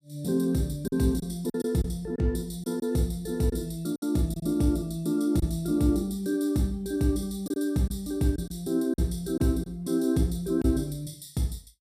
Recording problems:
lost packets; 5% of the sound replaced, filled with silence

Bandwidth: 14.5 kHz